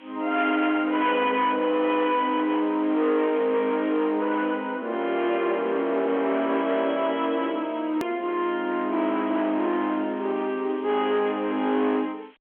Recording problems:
telephone audio; 220 Hz to 3.4 kHz, G.711
distortion; hard clipping, uneven, signal-to-distortion ratio 11 dB
hiss; SNR 28 dB
edit click; at 8 s

